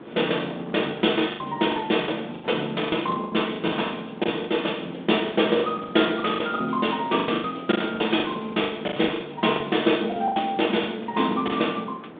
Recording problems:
phone line; 170 Hz to 3.7 kHz, G.726
wind noise; below 690 Hz, SNR 16 dB
packet loss; 15% of the sound replaced, filled with the last packet

